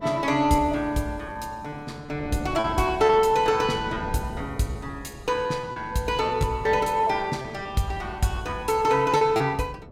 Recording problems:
wind on the microphone; below 380 Hz, SNR 17 dB
lost packets; 7% of the sound replaced, filled with repeated pitch periods

